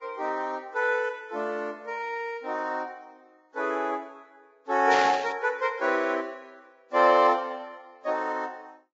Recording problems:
lossy codec; Vorbis, log-spectral distance 2 dB
burst of static; at 5 s; peak 0 dB vs average level

